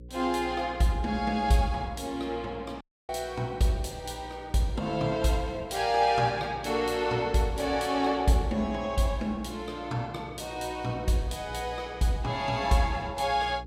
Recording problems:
hum; 60 Hz, harmonics up to 540 Hz, SNR 18 dB
audio cutting out; at 3 s

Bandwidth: 16.5 kHz